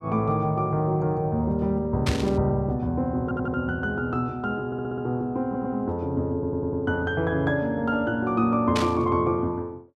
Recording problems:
static burst; at 2 s and at 9 s; peak +1 dB vs average level
audio stuttering; 4 times, first at 3 s

